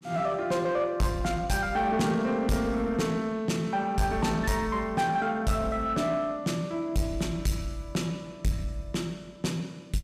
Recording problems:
distortion; soft clipping, signal-to-distortion ratio 10 dB

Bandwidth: 14.5 kHz